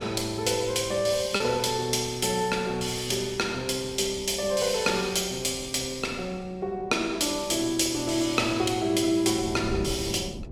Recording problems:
wind on the microphone; below 290 Hz, SNR 17 dB
lost packets; 0.4% of the sound replaced, filled with repeated pitch periods

